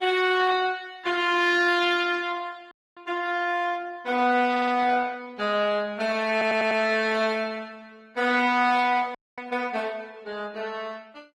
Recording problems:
lossy compression; Opus, then Opus, log-spectral distance 3 dB
audio freezing; at 2.5 s and at 9 s
stutter; at 4.5 s and at 6.5 s

